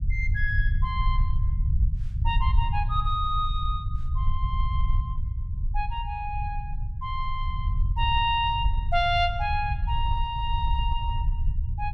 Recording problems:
rumble; below 78 Hz, SNR 0 dB

